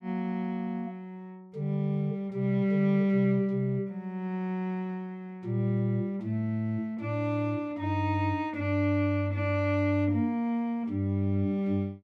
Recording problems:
none

